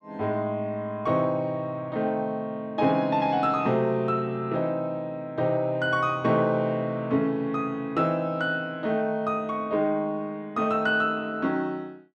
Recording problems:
none

